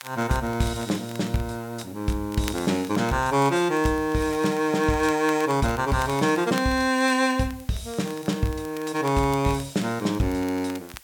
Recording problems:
hiss; SNR 24 dB
crackling; vinyl, SNR 20 dB

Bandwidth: 17.5 kHz